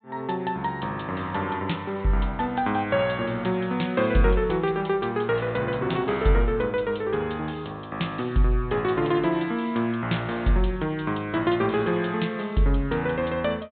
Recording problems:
treble cut off; nothing above 4 kHz

